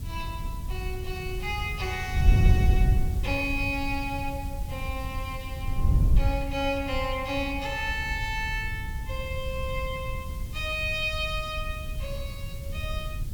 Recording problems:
hiss; slope +3 dB per octave, SNR 17 dB
wind on the microphone; below 94 Hz, SNR -1 dB

